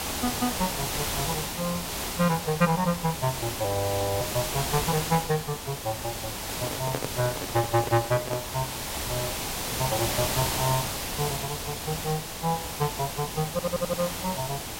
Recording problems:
hiss; slope -2 dB per octave, SNR 1 dB
frozen audio; at 3.5 s for 0.5 s
handling noise; from 6.5 to 8.5 s; peak +2 dB vs average level
stutter; at 14 s

